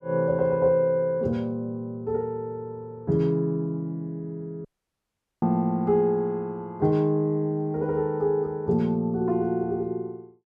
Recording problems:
audio cutting out; at 4.5 s for 1 s

